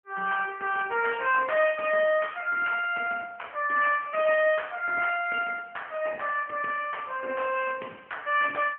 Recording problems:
telephone audio; 300 Hz to 3.1 kHz, AMR-NB

